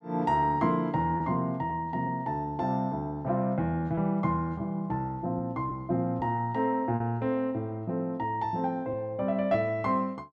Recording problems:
lost packets; 2% of the sound replaced, filled with repeated pitch periods

